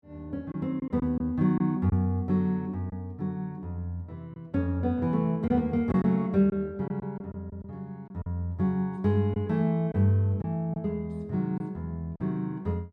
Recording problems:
lost packets; 5% of the sound replaced, filled with silence

